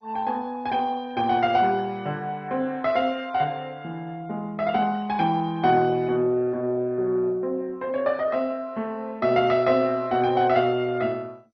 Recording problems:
codec artefacts; MP2, log-spectral distance 2 dB, nothing above 4.9 kHz

